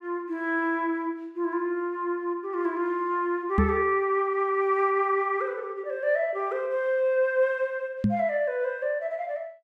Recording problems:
knock on the microphone; at 3.5 s and at 8 s; peak +7 dB vs average level

